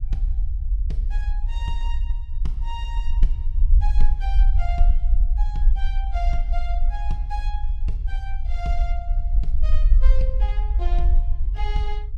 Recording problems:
low-frequency rumble; below 46 Hz, SNR -12 dB

